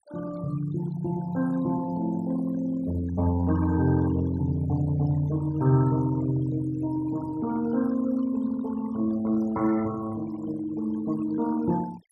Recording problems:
noise reduction artefacts; signal-to-artefact ratio 19 dB

